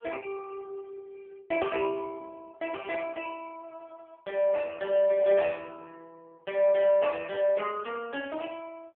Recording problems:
phone line; 280 Hz to 3.3 kHz, AMR-NB

